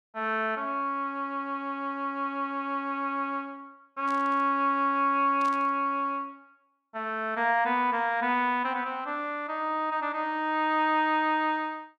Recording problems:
burst of static; at 4 s and at 5.5 s; peak -13 dB vs average level

